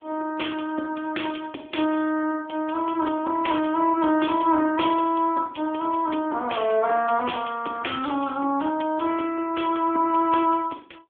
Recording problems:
phone line; 260 Hz to 3.4 kHz, AMR-NB

